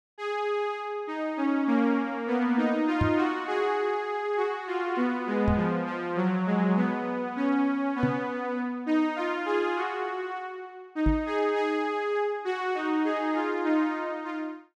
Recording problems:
knock on the microphone; 4 times, first at 3 s; peak +4 dB vs average level

